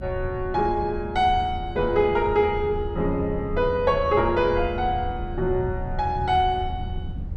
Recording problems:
rumble; below 100 Hz, SNR 10 dB

